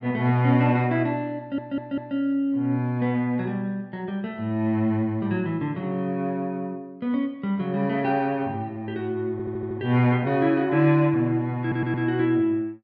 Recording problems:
stutter; at 1.5 s, at 9.5 s and at 12 s

